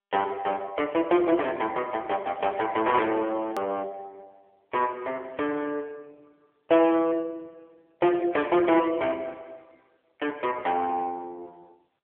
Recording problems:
telephone audio; 300 Hz to 3.3 kHz, AMR-NB
distorted audio; hard clipping, signal-to-distortion ratio 10 dB
click at an edit; at 3.5 s

